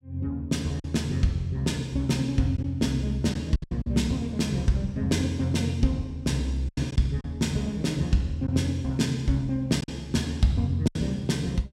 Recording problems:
lost packets; 4% of the sound replaced, filled with silence

